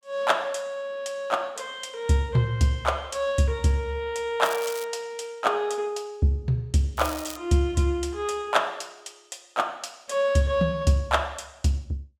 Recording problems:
crackling; at 4.5 s and at 7 s; loose cable, SNR 13 dB

